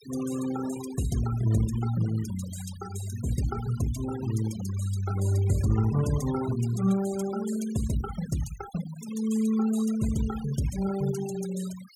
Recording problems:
noise reduction artefacts; signal-to-artefact ratio 15 dB

